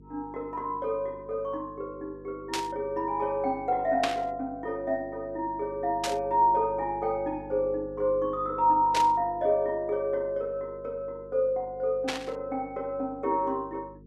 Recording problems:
hum; 50 Hz, harmonics up to 450 Hz, SNR 21 dB
static burst; 5 times, first at 2.5 s; peak +4 dB vs average level

